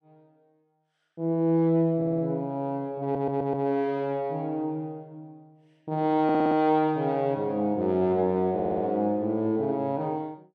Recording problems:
stutter; 4 times, first at 2 s

